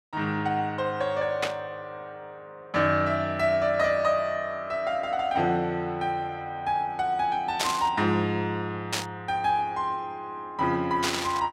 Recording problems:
static burst; 4 times, first at 1.5 s; peak +4 dB vs average level

